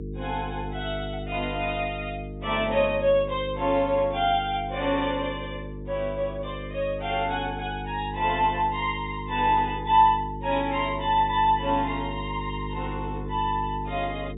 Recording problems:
treble missing; nothing above 4 kHz
electrical hum; 50 Hz, harmonics up to 450 Hz, SNR 10 dB

